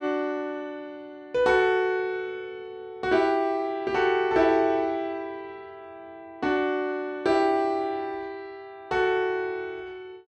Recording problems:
none

